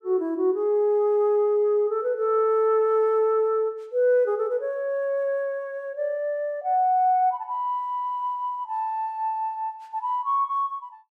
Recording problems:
none

